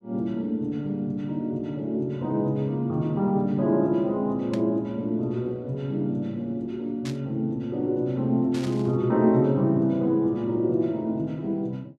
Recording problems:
static burst; at 4.5 s, at 7 s and at 8.5 s; peak -9 dB vs average level

